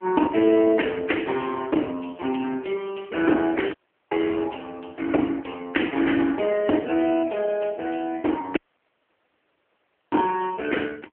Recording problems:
phone line; 240 Hz to 3.1 kHz, AMR-NB
audio cutting out; at 3.5 s and at 8.5 s for 1.5 s

